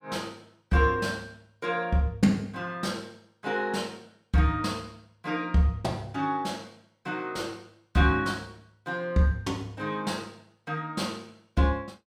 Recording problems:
none

